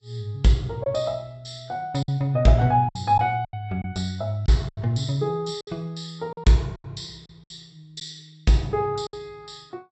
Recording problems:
treble cut off; nothing above 7.9 kHz
lossy codec; Vorbis, log-spectral distance 3 dB
lost packets; 7% of the sound replaced, filled with silence

